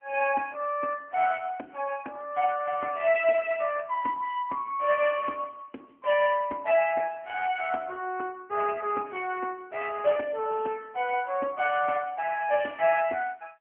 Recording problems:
phone line; 240 Hz to 2.9 kHz, AMR-NB

